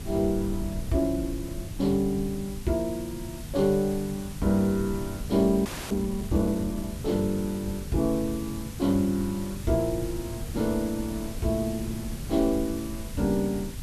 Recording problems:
hum; 50 Hz, harmonics up to 300 Hz, SNR 18 dB
background hiss; slope -1 dB per octave, SNR 16 dB
low-frequency rumble; below 120 Hz, SNR 12 dB
wind on the microphone; below 350 Hz, SNR 21 dB
audio freezing; at 5.5 s

